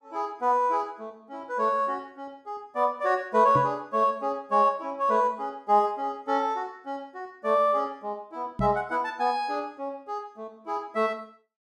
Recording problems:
microphone bump; at 3.5 s and at 8.5 s; peak +1 dB vs average level

